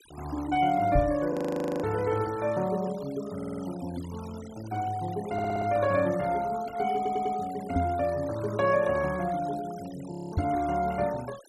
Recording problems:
denoising artefacts; signal-to-artefact ratio 19 dB
microphone thump; at 1 s, at 8 s and at 10 s; peak +5 dB vs average level
frozen audio; at 1.5 s for 0.5 s and at 10 s
stutter; at 3.5 s, at 5.5 s and at 7 s

